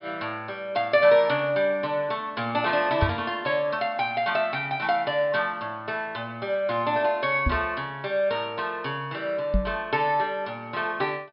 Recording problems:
treble missing; nothing above 5.5 kHz
microphone bump; at 3 s, at 7.5 s and at 9.5 s; peak +5 dB vs average level

